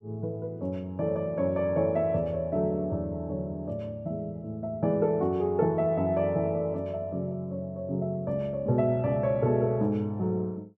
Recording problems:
none

